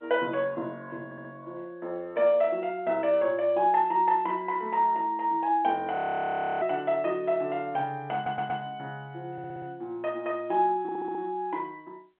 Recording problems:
telephone audio; 280 Hz to 3.4 kHz, G.711
audio stuttering; 4 times, first at 1 s
frozen audio; at 6 s for 0.5 s

